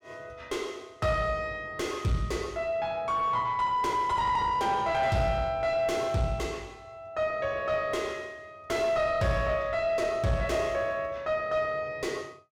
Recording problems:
distortion; soft clipping, signal-to-distortion ratio 8 dB

